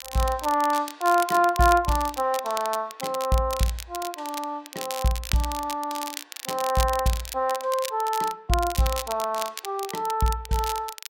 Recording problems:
crackle; vinyl, SNR 10 dB

